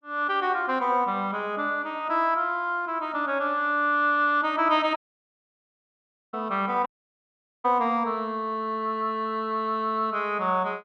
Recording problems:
dropout; at 5 s for 1.5 s and at 7 s for 1 s

